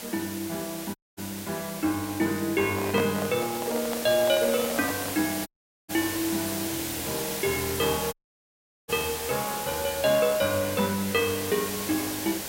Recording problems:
background hiss; SNR 5 dB
dropout; at 1 s, at 5.5 s and at 8 s for 1 s
handling noise; from 2.5 to 5.5 s; peak 0 dB vs average level

